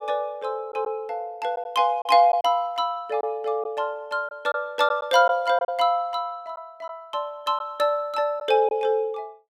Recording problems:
packet loss; 3% of the sound replaced, filled with silence

